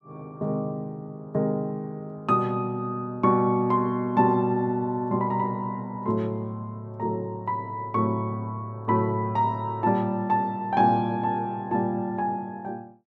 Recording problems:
none

